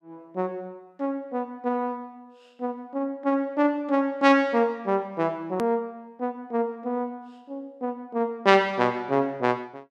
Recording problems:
edit click; at 5.5 s

